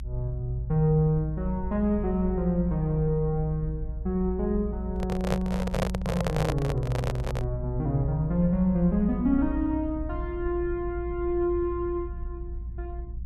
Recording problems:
low-frequency rumble; below 60 Hz, strongest tone 58 Hz, SNR 8 dB
handling noise; from 5 to 7.5 s; peak +4 dB vs average level

